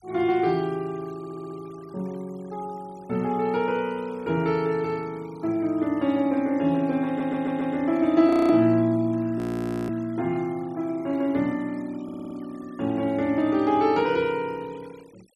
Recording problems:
denoising artefacts; signal-to-artefact ratio 26 dB
audio stuttering; at 1 s, at 7 s and at 12 s
audio freezing; at 8.5 s and at 9.5 s for 0.5 s

